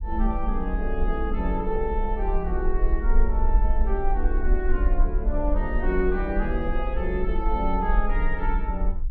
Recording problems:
rumble; below 44 Hz, strongest tone 20 Hz, SNR -1 dB

